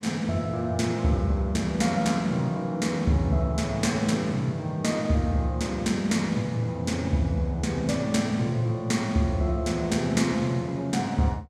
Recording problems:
none

